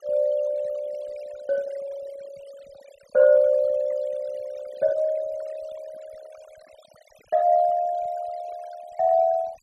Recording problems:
noise reduction artefacts; signal-to-artefact ratio 26 dB

